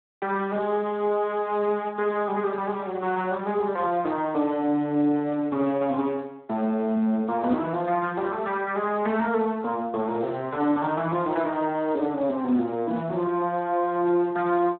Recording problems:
telephone audio; 170 Hz to 3.9 kHz, Speex

